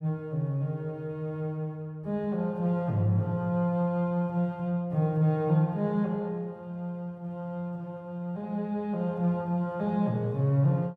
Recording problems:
none

